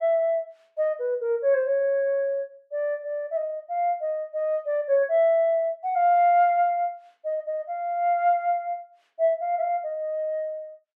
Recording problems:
none

